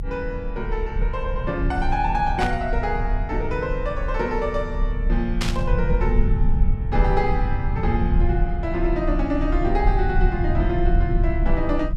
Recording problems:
low-frequency rumble; below 68 Hz, strongest tone 34 Hz, SNR 0 dB
static burst; at 2.5 s and at 5.5 s; peak +3 dB vs average level

